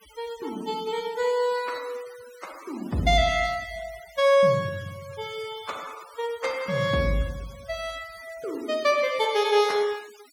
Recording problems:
noise reduction artefacts; signal-to-artefact ratio 21 dB

